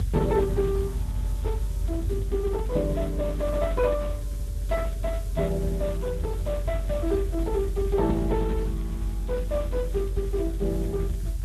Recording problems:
codec artefacts; Speex, log-spectral distance 2 dB
background hiss; SNR 21 dB
low-frequency rumble; below 94 Hz, strongest tone 46 Hz, SNR 3 dB

